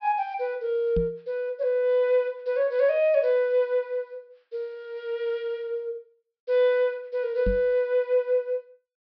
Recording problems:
treble cut off; nothing above 5.5 kHz
knock on the microphone; at 1 s and at 7.5 s; peak 0 dB vs average level

